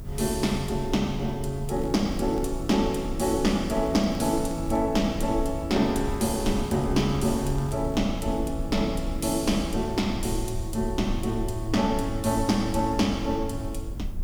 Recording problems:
background hiss; SNR 29 dB
low-frequency rumble; below 86 Hz, strongest tone 28 Hz, SNR 10 dB
crackling; at 2 s, from 3.5 to 5 s and from 6 to 8 s; loose cable, SNR 27 dB

